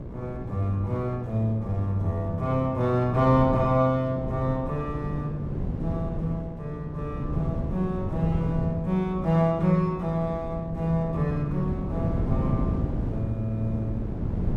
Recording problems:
hum; 60 Hz, harmonics up to 1.6 kHz, SNR 17 dB
wind noise; below 230 Hz, SNR 6 dB

